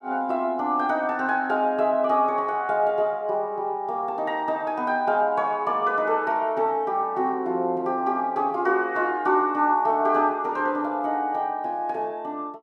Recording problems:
none

